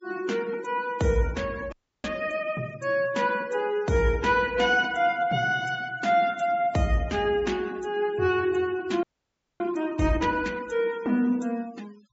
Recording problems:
treble cut off; nothing above 8 kHz
noise reduction artefacts; signal-to-artefact ratio 24 dB
audio freezing; at 1.5 s and at 9 s for 0.5 s

